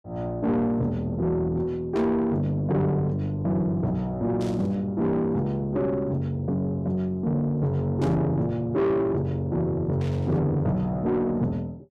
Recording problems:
distorted audio; soft clipping, signal-to-distortion ratio 11 dB
static burst; 4 times, first at 2 s; peak -13 dB vs average level

